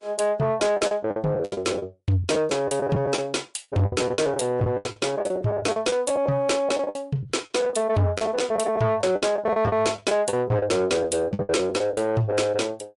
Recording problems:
lossy compression; MP3, log-spectral distance 2 dB, nothing above 11 kHz
distorted audio; soft clipping, signal-to-distortion ratio 10 dB
packet loss; 15% of the sound replaced, filled with the last packet

